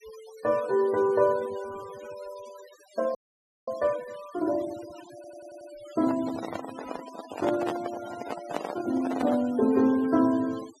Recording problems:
denoising artefacts; signal-to-artefact ratio 17 dB
frozen audio; at 3 s for 0.5 s
stutter; at 5 s
handling noise; from 6 to 9.5 s; peak +1 dB vs average level

